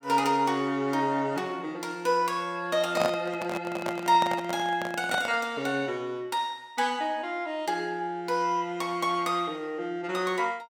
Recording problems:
handling noise; from 3 to 5.5 s; peak +3 dB vs average level

